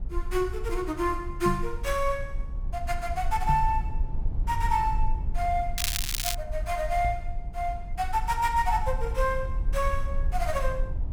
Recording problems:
rumble; below 54 Hz, strongest tone 22 Hz, SNR 5 dB
knock on the microphone; at 1.5 s, at 3.5 s and at 7 s; peak +5 dB vs average level
crackle; at 6 s; loose cable, SNR 0 dB

